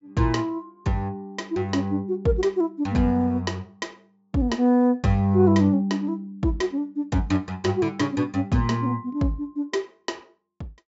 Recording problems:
low-pass filter; nothing above 8 kHz

